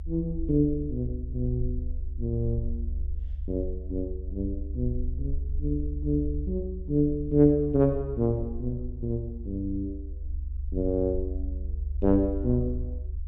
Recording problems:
rumble; below 70 Hz, SNR 6 dB

